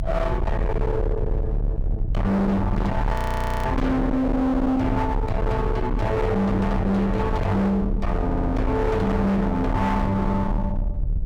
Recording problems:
distorted audio; hard clipping, uneven, signal-to-distortion ratio 6 dB
hum; 60 Hz, harmonics up to 660 Hz, SNR 20 dB
rumble; below 190 Hz, strongest tone 38 Hz, SNR 4 dB
audio freezing; at 3 s for 0.5 s
stutter; at 8.5 s

